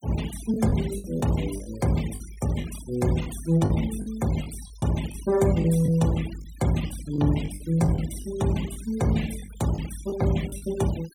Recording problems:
noise reduction artefacts; signal-to-artefact ratio 16 dB
packet loss; 7% of the sound replaced, filled with the last packet

